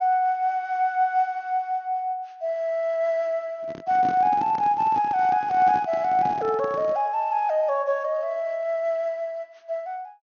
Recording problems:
treble missing; nothing above 6.5 kHz
handling noise; from 3.5 to 7 s; peak -6 dB vs average level

